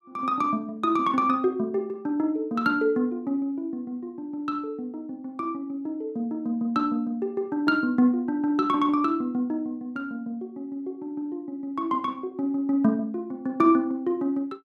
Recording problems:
none

